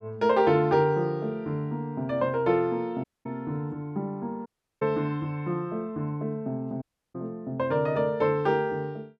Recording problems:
dropout; at 3 s, at 4.5 s and at 7 s

